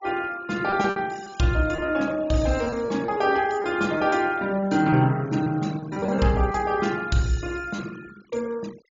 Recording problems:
low-pass filter; nothing above 7.2 kHz
noise reduction artefacts; signal-to-artefact ratio 22 dB
packet loss; 6% of the sound replaced, filled with repeated pitch periods

